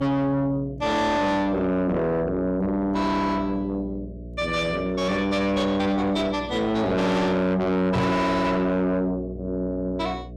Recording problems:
distortion; soft clipping, signal-to-distortion ratio 7 dB
mains hum; 60 Hz, harmonics up to 660 Hz, SNR 15 dB
microphone bump; at 8 s; peak +4 dB vs average level

